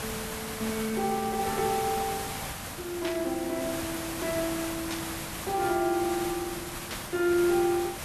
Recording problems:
background hiss; slope -2 dB per octave, SNR 5 dB
static burst; at 3 s, at 5 s and at 7 s; peak -2 dB vs average level

